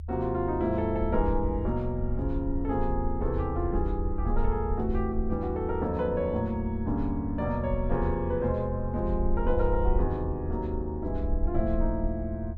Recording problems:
rumble; below 76 Hz, SNR 4 dB

